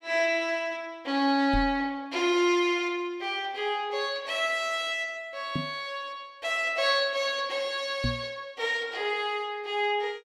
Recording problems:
microphone thump; at 1.5 s, at 5.5 s and at 8 s; peak +2 dB vs average level

